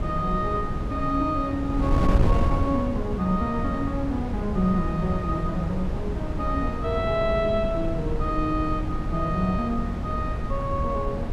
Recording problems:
wind noise; below 180 Hz, SNR 2 dB

